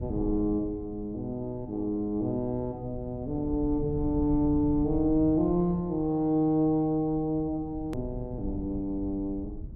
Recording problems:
low-frequency rumble; below 110 Hz, SNR 12 dB
hard cut with a click; at 8 s

